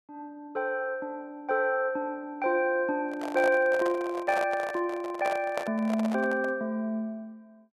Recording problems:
handling noise; from 3 to 6.5 s; peak 0 dB vs average level

